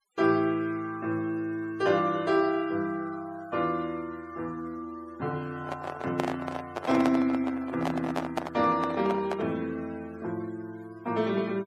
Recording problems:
denoising artefacts; signal-to-artefact ratio 22 dB
handling noise; from 5.5 to 9.5 s; peak +3 dB vs average level

